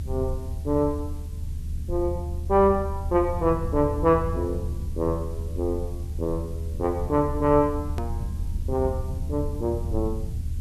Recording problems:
hiss; slope +1 dB per octave, SNR 27 dB
rumble; below 80 Hz, SNR 6 dB
edit click; at 8 s

